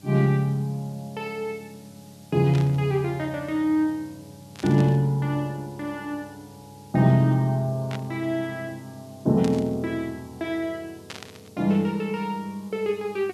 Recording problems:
electrical hum; 50 Hz, harmonics up to 900 Hz, SNR 25 dB
hiss; slope +3 dB per octave, SNR 28 dB
burst of static; 5 times, first at 2.5 s; peak -7 dB vs average level

